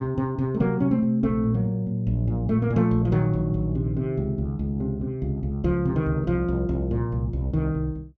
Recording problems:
none

